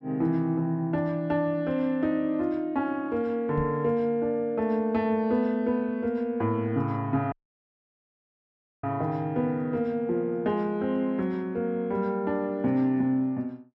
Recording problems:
microphone thump; at 3.5 s; peak -3 dB vs average level
dropout; at 7.5 s for 1.5 s

